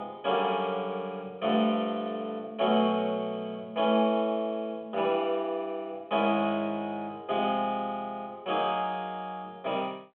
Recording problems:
telephone audio; 240 Hz to 3.3 kHz, G.726

